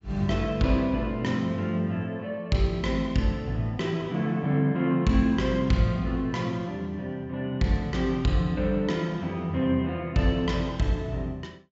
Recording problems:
treble missing; nothing above 8 kHz

